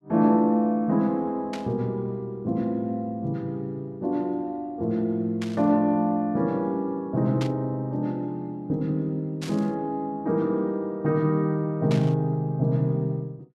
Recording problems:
burst of static; 5 times, first at 1.5 s; peak -6 dB vs average level

